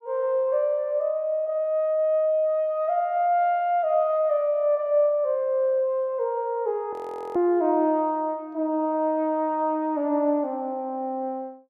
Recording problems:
frozen audio; at 7 s

